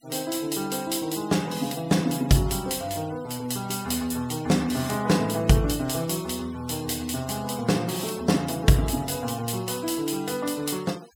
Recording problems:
denoising artefacts; signal-to-artefact ratio 20 dB

